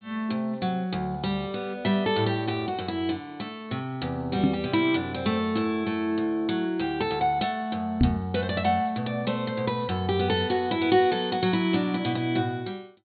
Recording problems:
low-pass filter; nothing above 4.4 kHz
knock on the microphone; at 4.5 s and at 8 s; peak +9 dB vs average level

